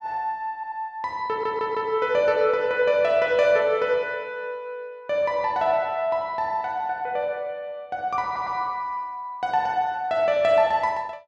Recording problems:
audio stuttering; at 0.5 s, at 1.5 s and at 8.5 s

